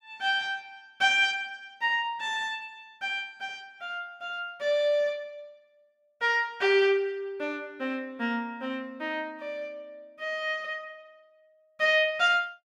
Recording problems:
none

